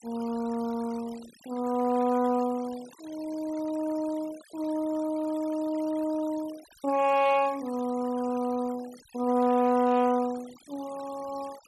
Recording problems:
noise reduction artefacts; signal-to-artefact ratio 21 dB

